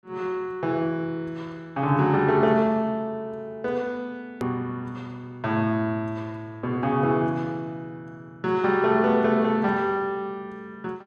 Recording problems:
hard cut with a click; at 4.5 s

